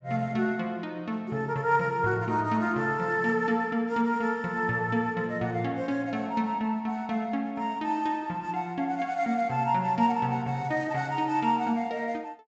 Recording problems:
treble cut off; nothing above 8 kHz

